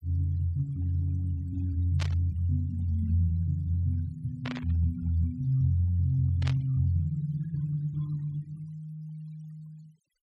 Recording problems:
denoising artefacts; signal-to-artefact ratio 28 dB
burst of static; at 2 s, at 4.5 s and at 6.5 s; peak -4 dB vs average level

